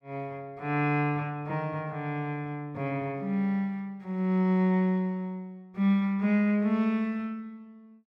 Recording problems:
none

